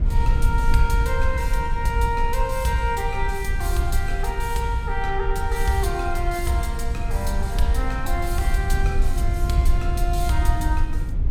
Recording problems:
low-frequency rumble; below 62 Hz, SNR 0 dB

